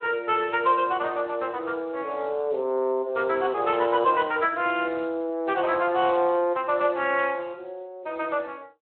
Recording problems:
telephone audio; 340 Hz to 3.2 kHz, Speex

